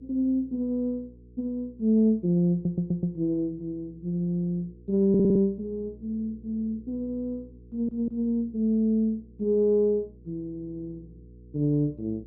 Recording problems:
hum; 60 Hz, harmonics up to 480 Hz, SNR 24 dB
stutter; at 2.5 s, at 5 s and at 7.5 s

